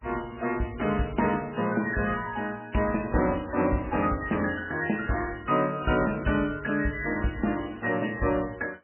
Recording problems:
codec artefacts; MP3, log-spectral distance 7 dB, nothing above 2.7 kHz

